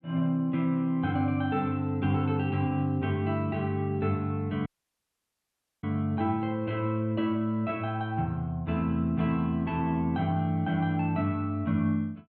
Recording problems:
dropout; at 4.5 s for 1 s

